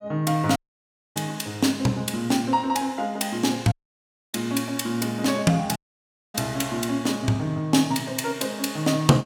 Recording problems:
audio cutting out; at 0.5 s for 0.5 s, at 3.5 s for 0.5 s and at 6 s for 0.5 s

